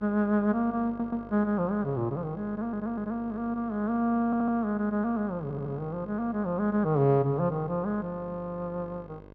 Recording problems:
hum; 50 Hz, harmonics up to 1.6 kHz, SNR 20 dB
audio stuttering; 4 times, first at 1 s

